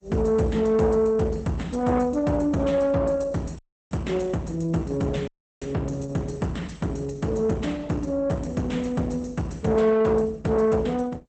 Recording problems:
lossy codec; Opus, log-spectral distance 3 dB, nothing above 8.2 kHz
distortion; soft clipping, signal-to-distortion ratio 11 dB
dropout; at 3.5 s and at 5.5 s

